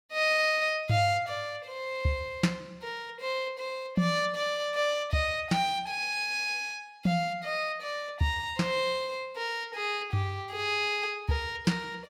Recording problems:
none

